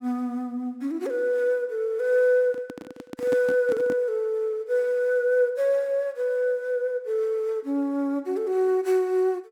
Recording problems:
microphone handling noise; from 2.5 to 4 s; peak -3 dB vs average level

